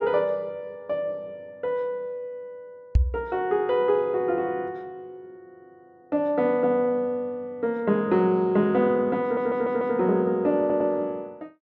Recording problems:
microphone thump; at 3 s; peak +8 dB vs average level
audio stuttering; at 9 s and at 11 s

